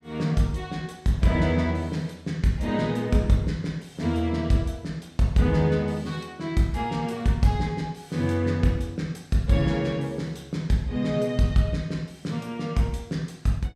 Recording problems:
none

